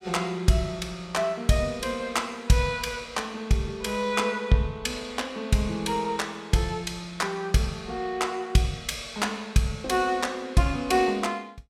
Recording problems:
none

